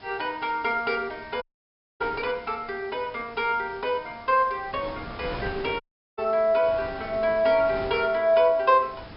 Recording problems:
low-pass filter; nothing above 5.2 kHz
background hiss; slope -2 dB per octave, SNR 27 dB
wind noise; below 1.3 kHz, SNR 17 dB
dropout; at 1.5 s for 0.5 s and at 6 s

